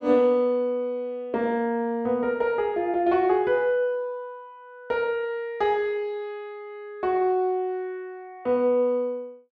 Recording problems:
none

